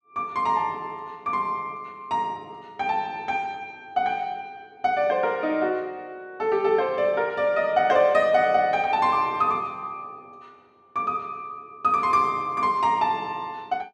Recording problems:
none

